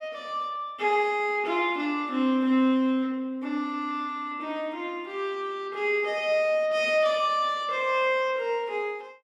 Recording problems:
none

